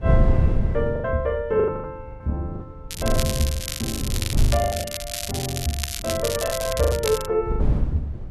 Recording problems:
wind on the microphone; below 110 Hz, SNR 0 dB
packet loss; 14% of the sound replaced, filled with the last packet
crackling; from 3 to 7 s; loose cable, SNR 4 dB

